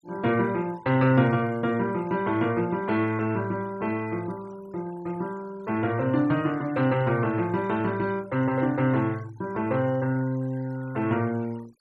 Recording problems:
denoising artefacts; signal-to-artefact ratio 24 dB

